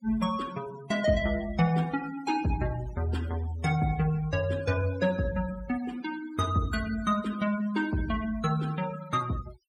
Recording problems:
denoising artefacts; signal-to-artefact ratio 17 dB

